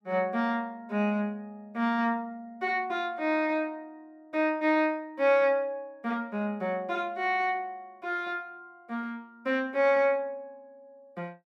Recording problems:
none

